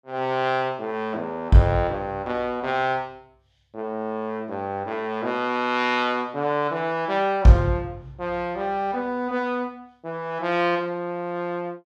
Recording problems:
none

